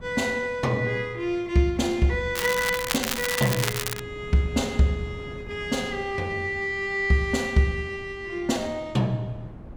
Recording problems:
wind on the microphone; below 260 Hz, SNR 18 dB
crackling; from 2.5 to 4 s; loose cable, SNR 3 dB

